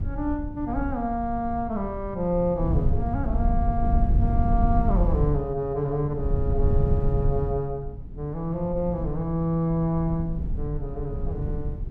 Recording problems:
wind on the microphone; below 96 Hz, SNR 1 dB

